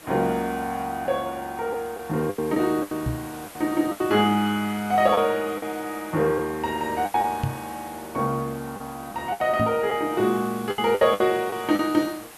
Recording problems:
background hiss; SNR 18 dB
packet loss; 8% of the sound replaced, filled with the last packet
microphone thump; at 3 s, at 7.5 s and at 9.5 s; peak +2 dB vs average level

